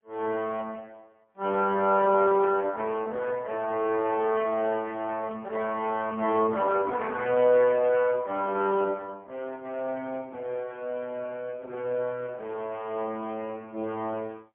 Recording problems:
phone line; 220 Hz to 3.2 kHz, AMR-NB, then MP3

